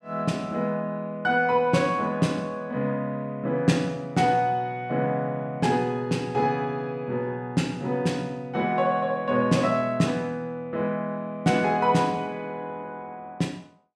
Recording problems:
none

